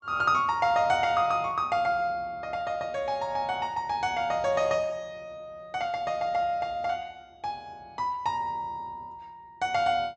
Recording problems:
low-pass filter; nothing above 8 kHz

